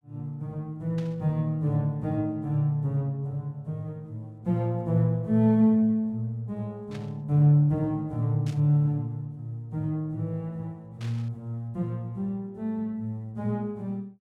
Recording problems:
burst of static; 4 times, first at 1 s; peak -14 dB vs average level

